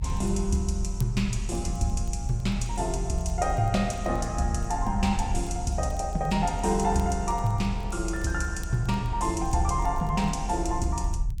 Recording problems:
rumble; below 70 Hz, strongest tone 40 Hz, SNR 5 dB
crackle; vinyl, SNR 28 dB

